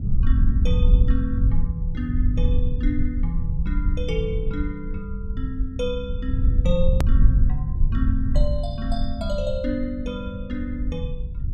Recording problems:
low-frequency rumble; below 72 Hz, SNR -5 dB
click at an edit; at 7 s

